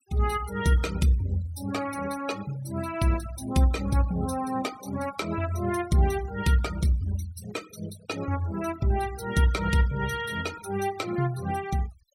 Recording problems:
denoising artefacts; signal-to-artefact ratio 17 dB

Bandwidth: 16 kHz